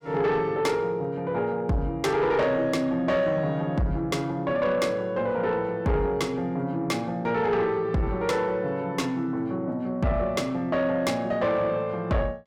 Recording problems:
distortion; soft clipping, signal-to-distortion ratio 11 dB

